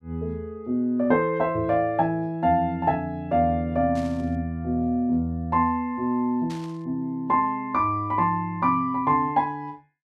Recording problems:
static burst; at 4 s and at 6.5 s; peak -14 dB vs average level

